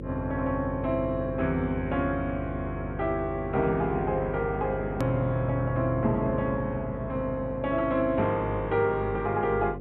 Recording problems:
treble missing; nothing above 4 kHz
electrical hum; 50 Hz, harmonics up to 550 Hz, SNR 8 dB
edit click; at 5 s

